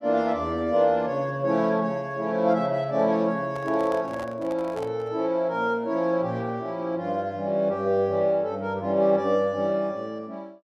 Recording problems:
handling noise; from 3.5 to 5 s; peak -9 dB vs average level

